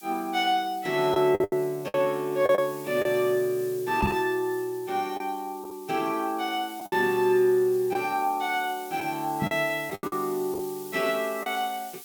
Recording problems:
background hiss; slope +3 dB per octave, SNR 18 dB
lost packets; 6% of the sound replaced, filled with the last packet
knock on the microphone; at 4 s and at 9.5 s; peak +3 dB vs average level

